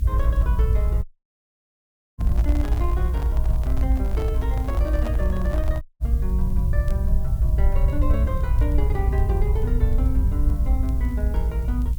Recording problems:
background hiss; slope +4 dB per octave, SNR 19 dB
rumble; below 64 Hz, SNR -9 dB
crackling; vinyl, SNR 29 dB
dropout; at 1 s for 1 s and at 6 s
handling noise; from 2 to 6 s; peak 0 dB vs average level

